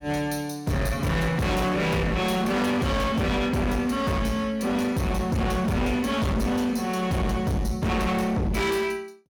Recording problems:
distorted audio; hard clipping, signal-to-distortion ratio 6 dB

